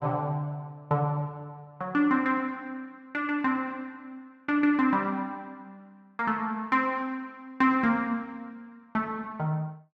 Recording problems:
none

